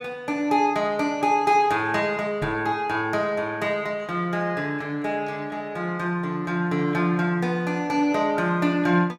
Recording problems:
microphone bump; at 2.5 s; peak -4 dB vs average level

